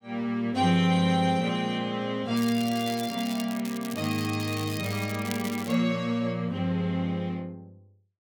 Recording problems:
crackle; from 2.5 to 6 s; loose cable, SNR 13 dB

